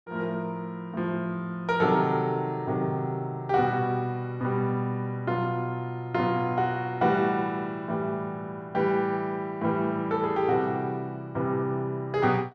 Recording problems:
none

